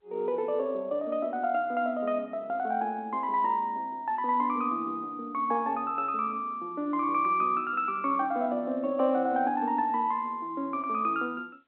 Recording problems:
telephone audio; 240 Hz to 3.5 kHz, G.711

